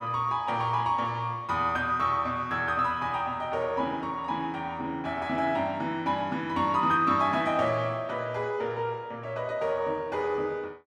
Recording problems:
none

